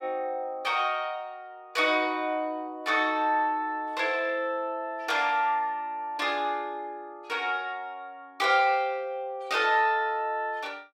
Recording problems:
none

